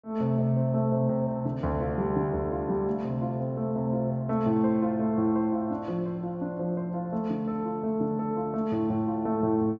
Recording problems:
treble missing; nothing above 8 kHz

